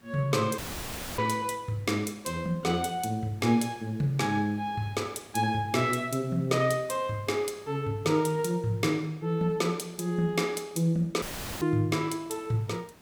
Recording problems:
hiss; slope -4 dB per octave, SNR 27 dB
dropout; at 0.5 s for 0.5 s and at 11 s; filled with static

